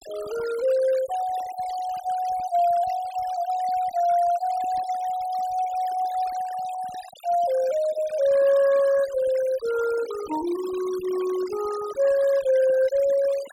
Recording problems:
denoising artefacts; signal-to-artefact ratio 18 dB

